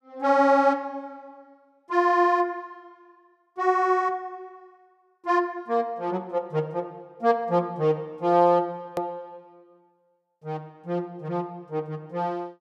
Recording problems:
edit click; at 9 s

